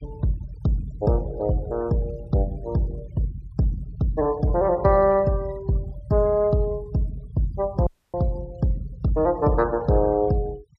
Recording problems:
denoising artefacts; signal-to-artefact ratio 25 dB
dropout; at 8 s

